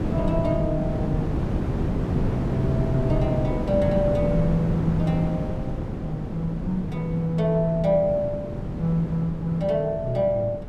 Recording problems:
wind noise; below 290 Hz, SNR 3 dB

